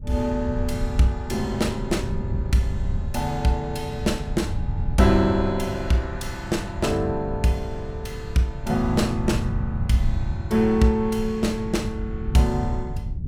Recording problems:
wind on the microphone; below 110 Hz, SNR 6 dB

